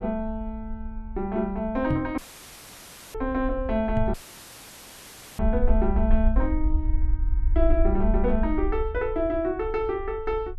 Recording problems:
rumble; below 58 Hz, SNR 2 dB
microphone thump; at 2 s and at 4 s; peak +4 dB vs average level
dropout; at 2 s for 1 s and at 4 s for 1.5 s; filled with static

